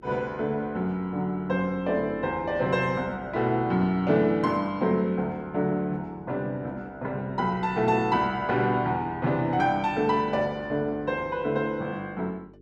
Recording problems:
hum; 50 Hz, harmonics up to 450 Hz, SNR 22 dB

